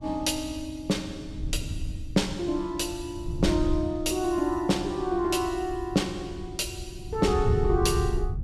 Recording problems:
wind noise; below 110 Hz, SNR 7 dB

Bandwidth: 14.5 kHz